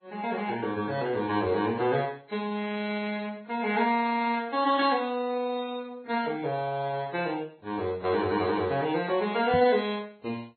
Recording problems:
low-pass filter; nothing above 4.2 kHz
codec artefacts; Vorbis, then AAC, log-spectral distance 3 dB
knock on the microphone; at 9.5 s; peak -1 dB vs average level

